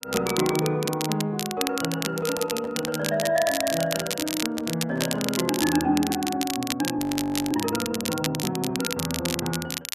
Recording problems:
crackle; vinyl, SNR 4 dB
microphone handling noise; from 2 to 6 s; peak -9 dB vs average level
audio freezing; at 7 s for 0.5 s

